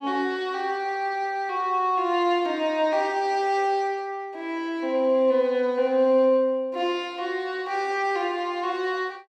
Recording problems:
none

